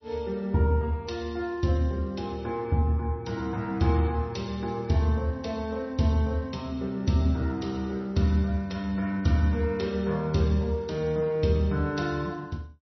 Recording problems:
codec artefacts; MP3, log-spectral distance 2 dB, nothing above 5.8 kHz

